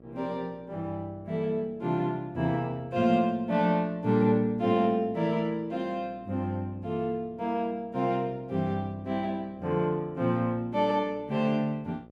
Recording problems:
electrical hum; 60 Hz, harmonics up to 780 Hz, SNR 25 dB

